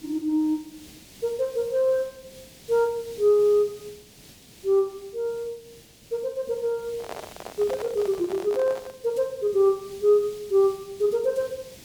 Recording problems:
hiss; SNR 22 dB
handling noise; from 7 to 9 s; peak -7 dB vs average level

